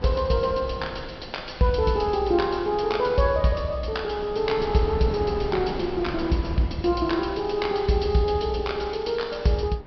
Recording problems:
low-pass filter; nothing above 5.5 kHz
wind on the microphone; below 520 Hz, SNR 13 dB

